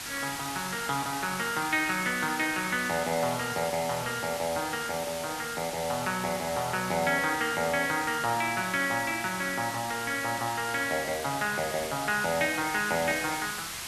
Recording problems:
background hiss; SNR 7 dB

